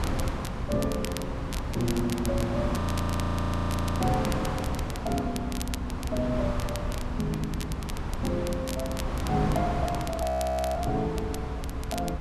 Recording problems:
low-frequency rumble; below 74 Hz, SNR 7 dB
wind on the microphone; below 840 Hz, SNR 2 dB
crackling; vinyl, SNR 10 dB
frozen audio; at 3 s for 1 s and at 10 s for 0.5 s

